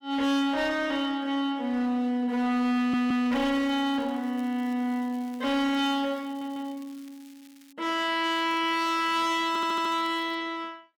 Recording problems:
distortion; hard clipping, signal-to-distortion ratio 10 dB
stutter; at 3 s, at 6.5 s and at 9.5 s
crackling; from 3.5 to 7.5 s and from 8.5 to 10 s; loose cable, SNR 28 dB

